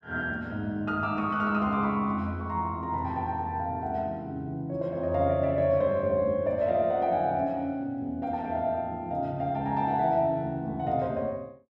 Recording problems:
none

